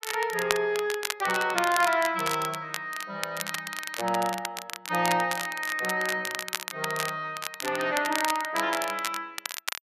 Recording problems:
crackling; vinyl, SNR 6 dB

